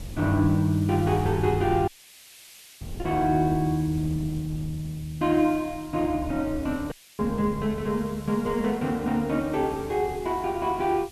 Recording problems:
background hiss; SNR 22 dB
wind on the microphone; below 150 Hz, SNR 16 dB
dropout; at 2 s for 1 s and at 7 s

